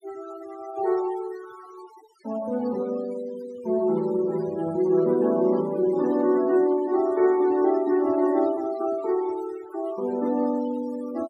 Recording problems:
denoising artefacts; signal-to-artefact ratio 18 dB

